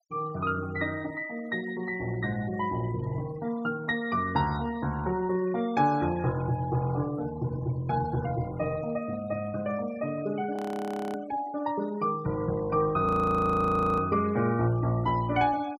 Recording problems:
noise reduction artefacts; signal-to-artefact ratio 19 dB
audio freezing; at 11 s for 0.5 s and at 13 s for 1 s

